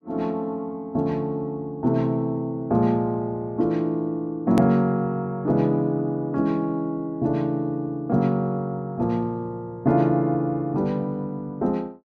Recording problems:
edit click; at 4.5 s

